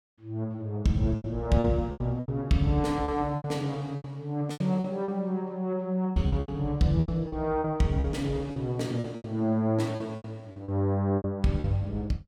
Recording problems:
packet loss; 12% of the sound replaced, filled with repeated pitch periods

